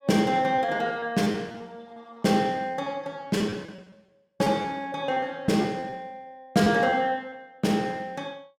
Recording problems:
packet loss; 8% of the sound replaced, filled with repeated pitch periods

